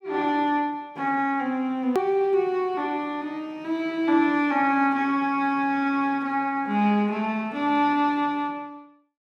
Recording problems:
click at an edit; at 2 s

